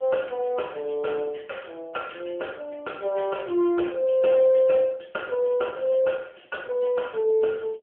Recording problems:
phone line; 300 Hz to 3.3 kHz, AMR-NB

